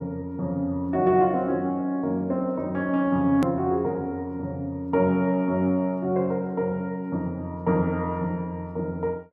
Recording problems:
edit click; at 3.5 s

